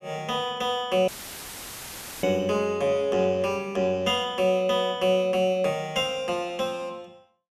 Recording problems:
dropout; at 1 s for 1 s; filled with static

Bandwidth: 14 kHz